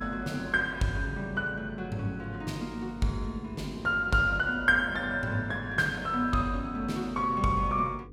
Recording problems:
hum; 50 Hz, harmonics up to 500 Hz, SNR 18 dB

